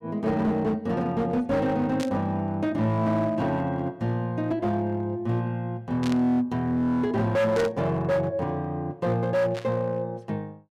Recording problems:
distorted audio; hard clipping, signal-to-distortion ratio 11 dB
burst of static; 4 times, first at 2 s; peak -6 dB vs average level

